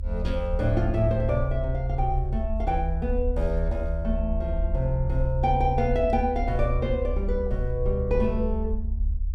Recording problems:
low-frequency rumble; below 70 Hz, strongest tone 36 Hz, SNR 3 dB

